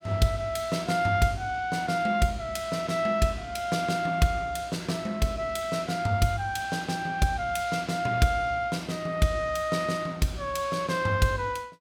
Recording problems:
none

